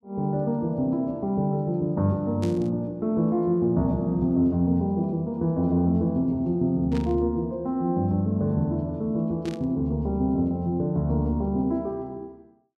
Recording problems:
burst of static; at 2.5 s, at 7 s and at 9.5 s; peak -12 dB vs average level

